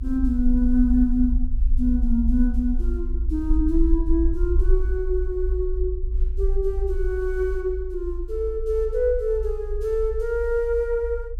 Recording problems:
low-frequency rumble; below 54 Hz, strongest tone 28 Hz, SNR 3 dB

